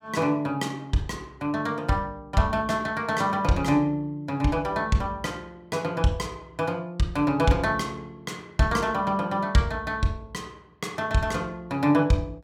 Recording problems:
none

